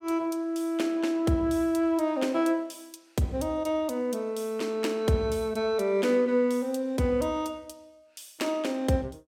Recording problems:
none

